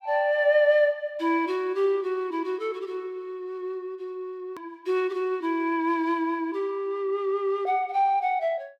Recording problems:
hard cut with a click; at 4.5 s

